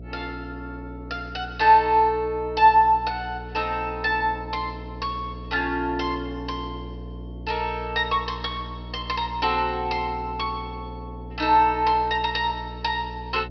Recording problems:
low-pass filter; nothing above 5.5 kHz
hum; 60 Hz, harmonics up to 720 Hz, SNR 15 dB

